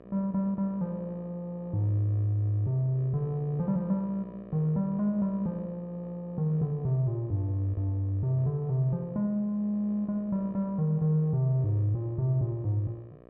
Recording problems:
hum; 60 Hz, harmonics up to 1.9 kHz, SNR 21 dB

